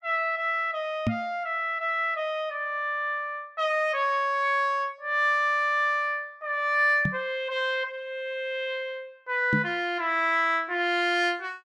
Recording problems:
microphone thump; at 1 s, at 7 s and at 9.5 s; peak +3 dB vs average level

